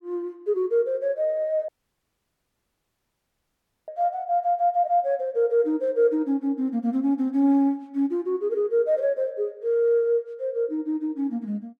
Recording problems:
dropout; at 1.5 s for 2 s

